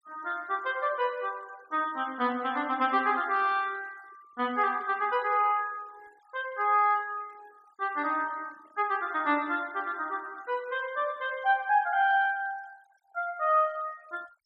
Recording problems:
denoising artefacts; signal-to-artefact ratio 26 dB

